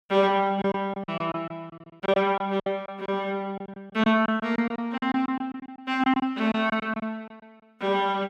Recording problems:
lost packets; 13% of the sound replaced, filled with silence

